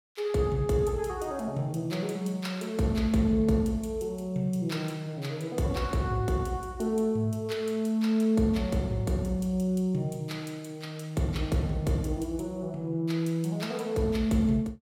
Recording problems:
none

